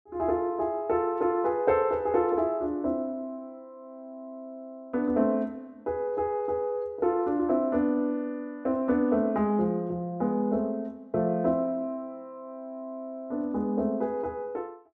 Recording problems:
none

